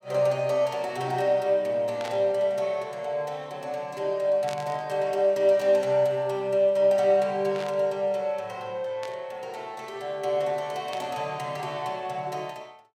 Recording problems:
burst of static; 5 times, first at 2 s; peak -9 dB vs average level

